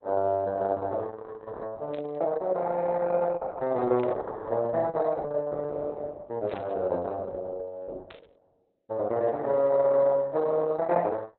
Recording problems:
lossy codec; Opus, log-spectral distance 3 dB, nothing above 4 kHz
static burst; 4 times, first at 2 s; peak -9 dB vs average level

